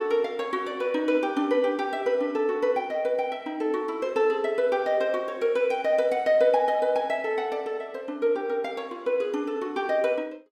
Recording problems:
none

